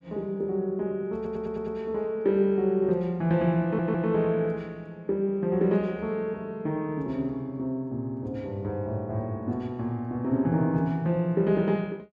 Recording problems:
stutter; at 1 s and at 3.5 s

